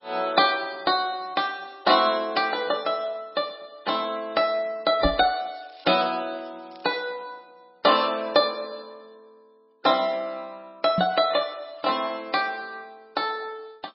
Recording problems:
lossy compression; MP3, log-spectral distance 4 dB, nothing above 4.8 kHz
crackling; at 1 s and from 5.5 to 7 s; loose cable, SNR 29 dB
microphone bump; at 5 s and at 11 s; peak +2 dB vs average level

